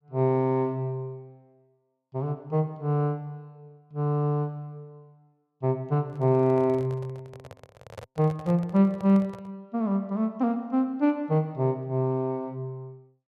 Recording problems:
microphone handling noise; from 6 to 9.5 s; peak -9 dB vs average level

